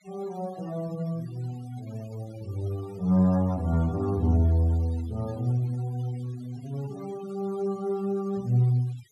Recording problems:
denoising artefacts; signal-to-artefact ratio 24 dB

